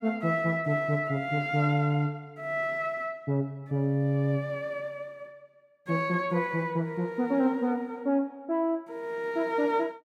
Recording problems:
none

